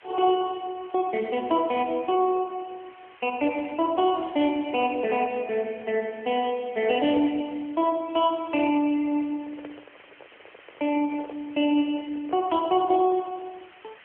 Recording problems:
phone line; 260 Hz to 3.2 kHz, AMR-NB
background hiss; SNR 25 dB
handling noise; from 9 to 13 s; peak -14 dB vs average level

